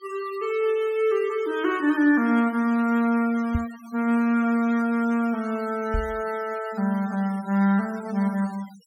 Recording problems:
denoising artefacts; signal-to-artefact ratio 22 dB
knock on the microphone; at 3.5 s and at 6 s; peak +1 dB vs average level

